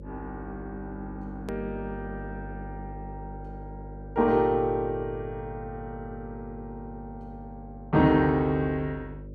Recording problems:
hum; 50 Hz, harmonics up to 600 Hz, SNR 14 dB
hard cut with a click; at 1.5 s

